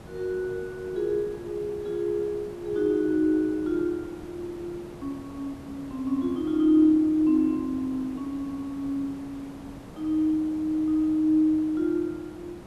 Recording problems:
background hiss; slope -7 dB per octave, SNR 18 dB

